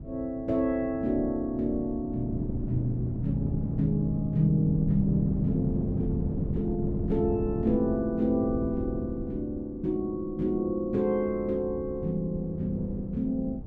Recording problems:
wind noise; below 210 Hz, SNR 8 dB

